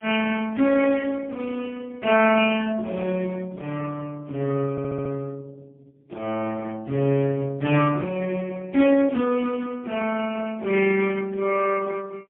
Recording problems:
phone line; 170 Hz to 3.2 kHz, AMR-NB, then MP3
stutter; at 4.5 s

